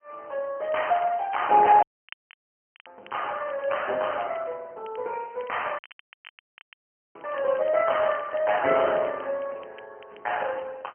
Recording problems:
phone line; 280 Hz to 3.1 kHz, AMR-NB, then MP3
crackling; vinyl, SNR 27 dB
audio cutting out; at 2 s for 1 s and at 6 s for 1.5 s

